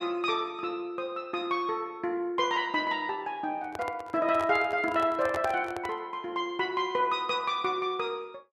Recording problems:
microphone handling noise; from 3.5 to 6 s; peak -1 dB vs average level

